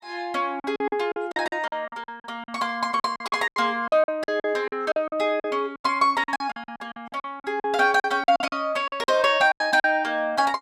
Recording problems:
lost packets; 17% of the sound replaced, filled with silence

